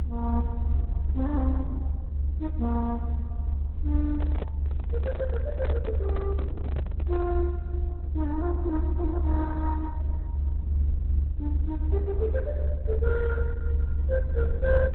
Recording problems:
codec artefacts; MP2, then Opus, log-spectral distance 2 dB, nothing above 4 kHz
low-frequency rumble; below 74 Hz, strongest tone 72 Hz, SNR -4 dB
handling noise; from 4 to 7.5 s; peak -3 dB vs average level

